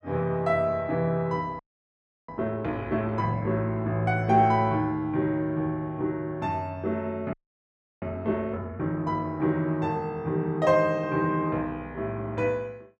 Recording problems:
audio freezing; at 1.5 s for 0.5 s and at 7.5 s for 0.5 s

